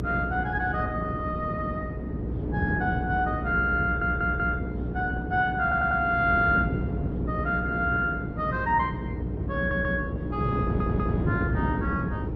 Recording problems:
codec artefacts; MP2, then Opus, log-spectral distance 2 dB
hum; 60 Hz, harmonics up to 480 Hz, SNR 7 dB
wind on the microphone; below 310 Hz, SNR 4 dB
audio stuttering; 4 times, first at 4 s

